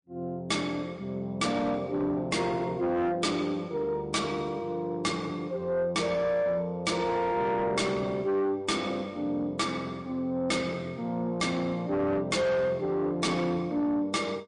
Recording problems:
lossy codec; MP3, log-spectral distance 2 dB, nothing above 8.2 kHz
distortion; soft clipping, signal-to-distortion ratio 8 dB

